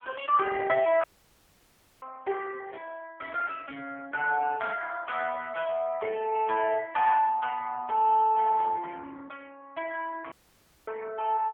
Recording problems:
phone line; 260 Hz to 3 kHz, AMR-NB
audio cutting out; at 1 s for 1 s and at 10 s for 0.5 s
burst of static; at 8.5 s; peak -19 dB vs average level

